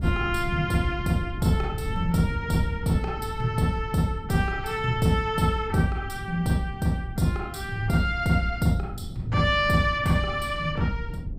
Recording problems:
wind noise; below 150 Hz, SNR 10 dB

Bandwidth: 15.5 kHz